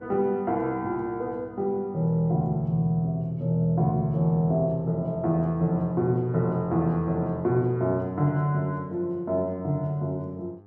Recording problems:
mains hum; 50 Hz, harmonics up to 1.3 kHz, SNR 28 dB

